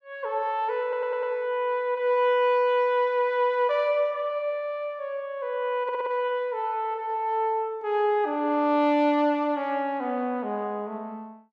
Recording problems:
audio stuttering; at 1 s and at 6 s

